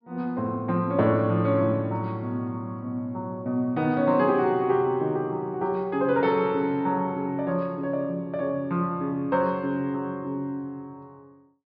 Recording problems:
treble missing; nothing above 5.5 kHz

